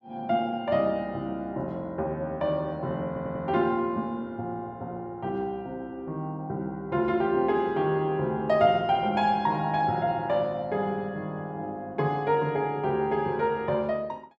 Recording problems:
audio stuttering; at 3 s

